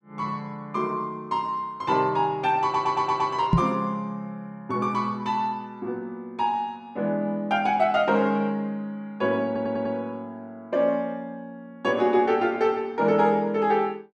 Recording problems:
audio stuttering; at 2.5 s and at 9.5 s
microphone bump; at 3.5 s; peak +8 dB vs average level

